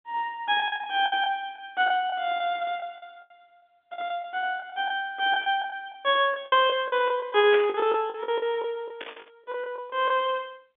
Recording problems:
phone line; 220 Hz to 3.6 kHz, G.711
lost packets; 13% of the sound replaced, filled with the last packet
static burst; at 7.5 s and at 9 s; peak -2 dB vs average level

